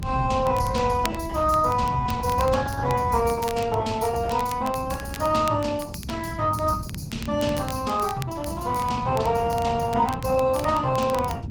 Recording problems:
lossy codec; Opus, log-spectral distance 3 dB, nothing above 19 kHz
rumble; below 150 Hz, SNR 8 dB
crackling; vinyl, SNR 18 dB

